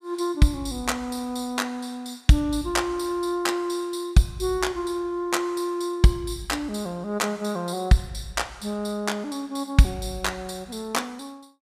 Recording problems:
none

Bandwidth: 15 kHz